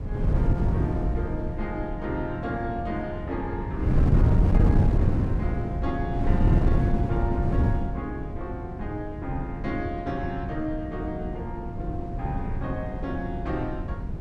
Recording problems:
wind noise; below 160 Hz, SNR -5 dB

